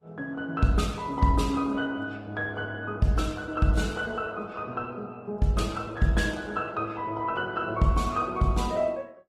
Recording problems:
lossy compression; Vorbis, then Opus, log-spectral distance 3 dB

